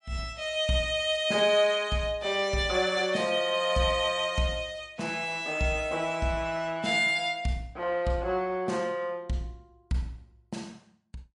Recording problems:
lossy compression; MP3, log-spectral distance 2 dB, nothing above 10.1 kHz

